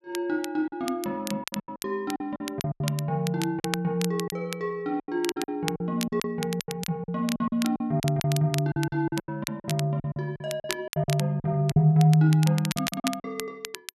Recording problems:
crackling; vinyl, SNR 10 dB
packet loss; 15% of the sound replaced, filled with silence

